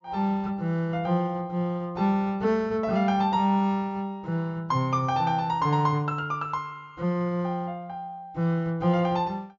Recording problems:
low-pass filter; nothing above 7.3 kHz

